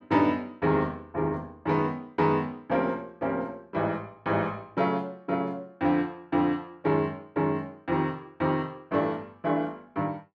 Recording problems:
none

